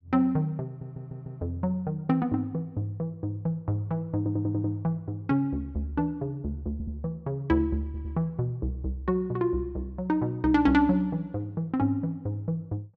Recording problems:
stutter; 4 times, first at 0.5 s

